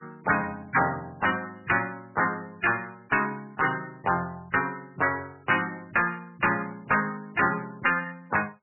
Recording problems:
lossy compression; MP3, log-spectral distance 4 dB, nothing above 2.6 kHz
distortion; soft clipping, signal-to-distortion ratio 11 dB

